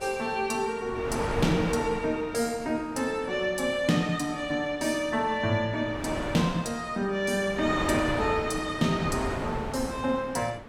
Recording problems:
wind noise; below 1.1 kHz, SNR 8 dB

